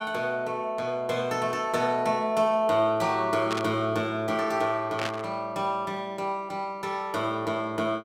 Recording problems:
static burst; at 3.5 s and at 5 s; peak 0 dB vs average level

